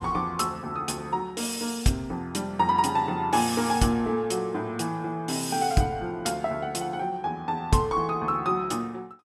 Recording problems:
none

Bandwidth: 14 kHz